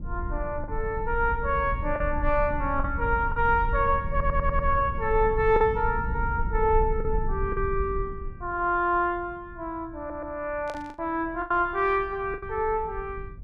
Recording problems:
low-frequency rumble; below 72 Hz, SNR 7 dB
lost packets; 5% of the sound replaced, filled with the last packet
audio stuttering; at 4 s and at 10 s
burst of static; at 11 s; peak -13 dB vs average level

